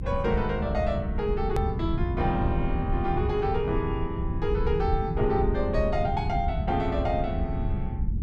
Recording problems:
rumble; below 130 Hz, SNR 2 dB
hard cut with a click; at 1.5 s

